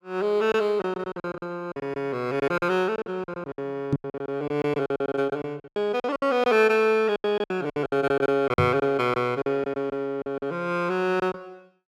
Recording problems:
packet loss; 16% of the sound replaced, filled with silence
microphone thump; at 4 s and at 8.5 s; peak +6 dB vs average level

